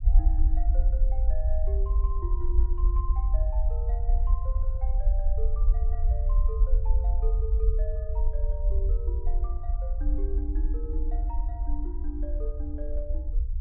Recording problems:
low-pass filter; nothing above 4.3 kHz
low-frequency rumble; below 54 Hz, SNR -13 dB

